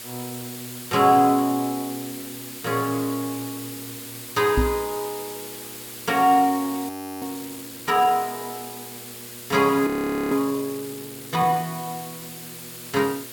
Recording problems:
hum; 60 Hz, harmonics up to 1.2 kHz, SNR 25 dB
hiss; slope +1 dB per octave, SNR 12 dB
microphone thump; at 4.5 s; peak +4 dB vs average level
audio freezing; at 7 s and at 10 s

